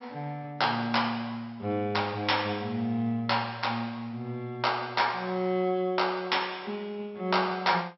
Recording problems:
low-pass filter; nothing above 5.6 kHz

